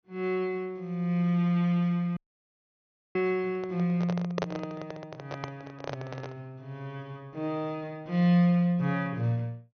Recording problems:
low-pass filter; nothing above 6.3 kHz
audio cutting out; at 2 s for 1 s
handling noise; from 3.5 to 6.5 s; peak +1 dB vs average level

